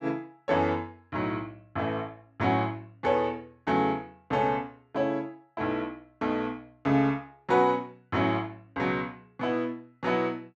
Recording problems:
none

